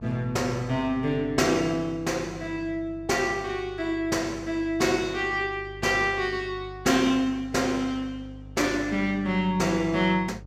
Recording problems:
hum; 50 Hz, harmonics up to 600 Hz, SNR 18 dB

